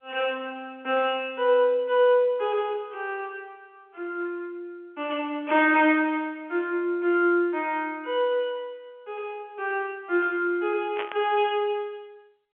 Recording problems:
telephone audio; 260 Hz to 3.3 kHz, G.711
static burst; at 11 s; peak -3 dB vs average level

